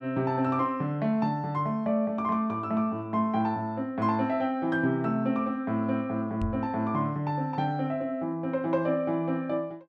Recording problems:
microphone bump; at 6.5 s; peak -1 dB vs average level

